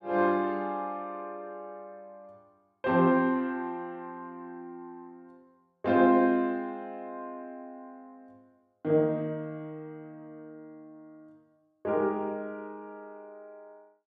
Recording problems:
none

